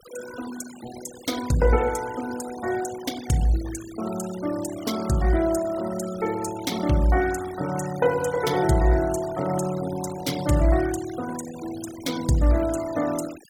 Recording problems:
noise reduction artefacts; signal-to-artefact ratio 16 dB

